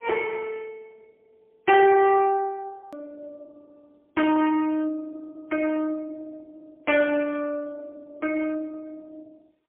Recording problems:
phone line; 340 Hz to 3.4 kHz, AMR-NB, then MP3
distortion; hard clipping, uneven, signal-to-distortion ratio 9 dB
edit click; at 3 s

